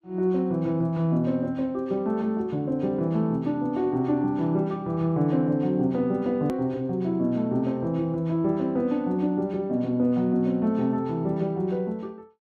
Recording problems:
edit click; at 6.5 s

